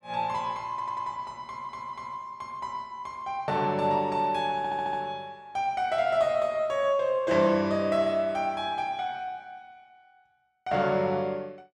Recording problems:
audio stuttering; at 0.5 s, at 1.5 s and at 4.5 s

